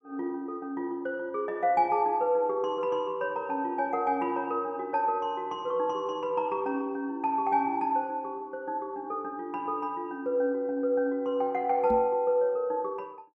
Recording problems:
knock on the microphone; at 12 s; peak -2 dB vs average level

